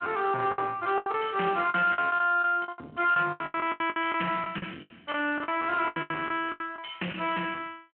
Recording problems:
phone line; 240 Hz to 3.3 kHz, Speex
distorted audio; soft clipping, signal-to-distortion ratio 11 dB
packet loss; 17% of the sound replaced, filled with the last packet

